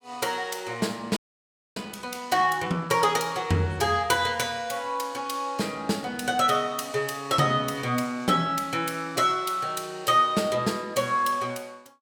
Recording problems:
frozen audio; at 1 s for 0.5 s

